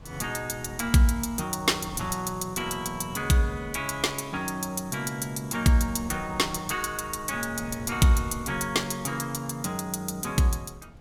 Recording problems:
wind noise; below 200 Hz, SNR 19 dB

